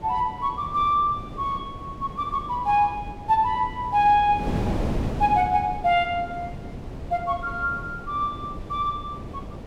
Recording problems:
wind noise; below 360 Hz, SNR 10 dB

